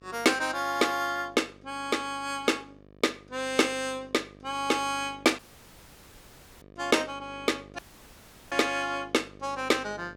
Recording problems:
hum; 50 Hz, harmonics up to 1.8 kHz, SNR 24 dB
dropout; at 5.5 s for 1 s and at 8 s for 0.5 s

